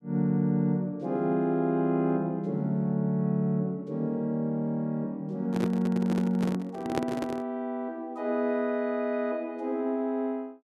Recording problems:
microphone handling noise; from 5.5 to 7.5 s; peak +4 dB vs average level

